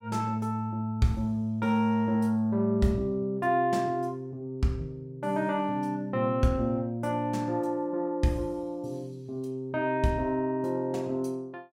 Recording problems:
none

